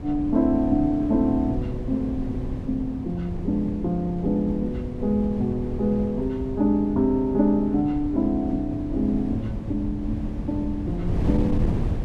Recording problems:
wind on the microphone; below 190 Hz, SNR 7 dB

